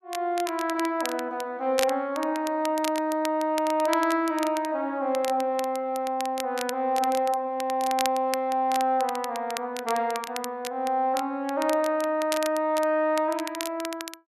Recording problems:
crackling; vinyl, SNR 12 dB

